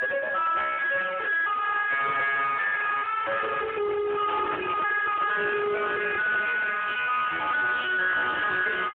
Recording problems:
telephone audio; 560 Hz to 2.2 kHz, Speex
distortion; hard clipping, uneven, signal-to-distortion ratio 4 dB
microphone handling noise; from 4.5 to 6.5 s; peak -5 dB vs average level

